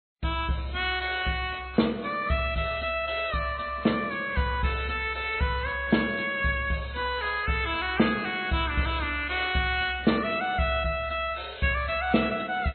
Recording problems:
codec artefacts; MP2, then MP3, log-spectral distance 6 dB, nothing above 3.8 kHz

